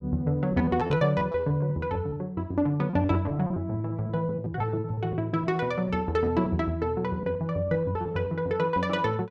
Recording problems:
lost packets; 11% of the sound replaced, filled with repeated pitch periods

